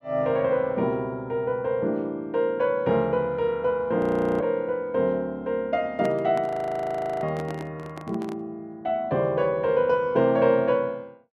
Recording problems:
frozen audio; at 4 s and at 6.5 s for 0.5 s
microphone handling noise; from 6 to 8.5 s; peak -7 dB vs average level

